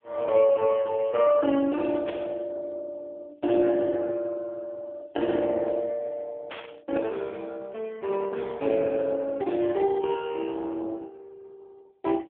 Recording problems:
phone line; 240 Hz to 3.5 kHz, AMR-NB
static burst; at 2 s and at 6.5 s; peak -7 dB vs average level

